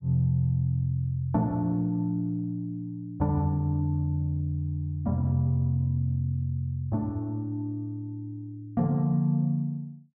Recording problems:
none

